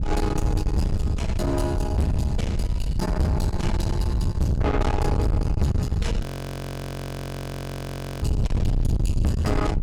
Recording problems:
distortion; soft clipping, signal-to-distortion ratio 6 dB
wind noise; below 130 Hz, SNR 1 dB
frozen audio; at 6 s for 2 s

